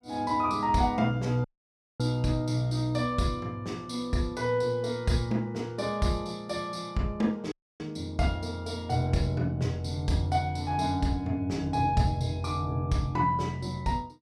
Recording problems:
audio cutting out; at 1.5 s for 0.5 s and at 7.5 s

